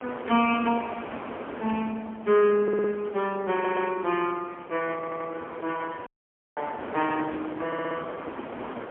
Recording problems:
telephone audio; 190 Hz to 3.3 kHz, AMR-NB, then MP3
wind noise; below 1.1 kHz, SNR 11 dB
audio stuttering; 4 times, first at 2.5 s
dropout; at 6 s for 0.5 s

